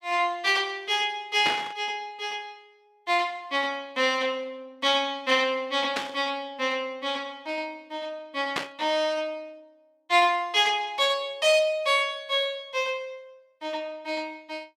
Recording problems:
static burst; at 1.5 s, at 6 s and at 8.5 s; peak +2 dB vs average level

